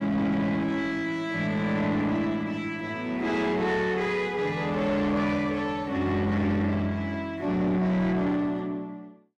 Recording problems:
distortion; soft clipping, signal-to-distortion ratio 10 dB

